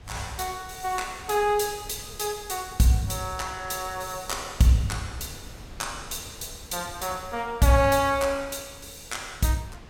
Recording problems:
wind on the microphone; below 400 Hz, SNR 20 dB

